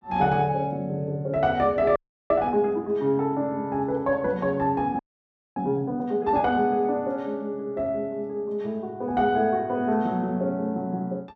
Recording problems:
frozen audio; at 2 s and at 5 s for 0.5 s

